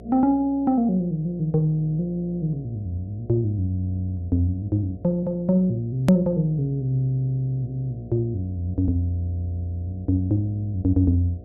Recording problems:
hum; 60 Hz, harmonics up to 720 Hz, SNR 19 dB
edit click; at 6 s

